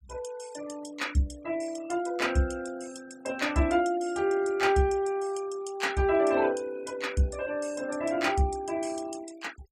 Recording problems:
denoising artefacts; signal-to-artefact ratio 21 dB

